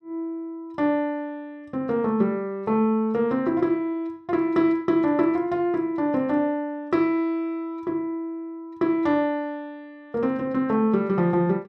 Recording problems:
none

